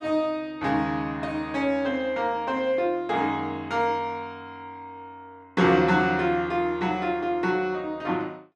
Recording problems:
none

